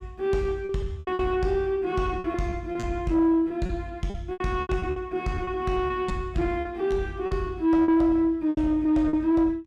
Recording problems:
distortion; soft clipping, signal-to-distortion ratio 10 dB
packet loss; 12% of the sound replaced, filled with repeated pitch periods

